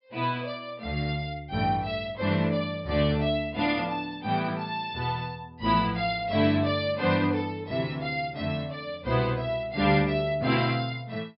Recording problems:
treble cut off; nothing above 5.5 kHz

